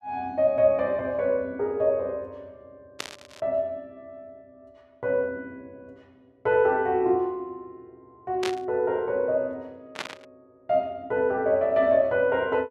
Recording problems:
static burst; at 3 s, at 8.5 s and at 10 s; peak -2 dB vs average level

